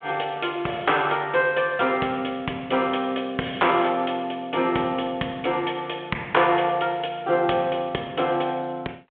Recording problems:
phone line; 280 Hz to 3.5 kHz, G.726

